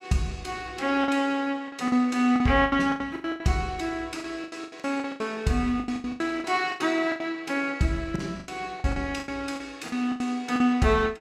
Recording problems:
lost packets; 16% of the sound replaced, filled with the last packet

